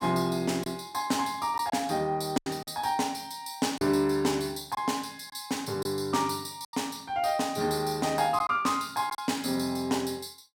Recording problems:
lost packets; 4% of the sound replaced, filled with silence

